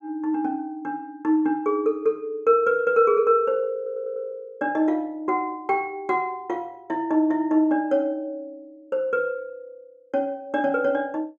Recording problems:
audio stuttering; at 4 s

